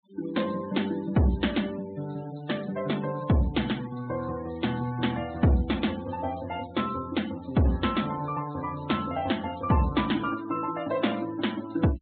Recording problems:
low-pass filter; nothing above 4 kHz
noise reduction artefacts; signal-to-artefact ratio 17 dB

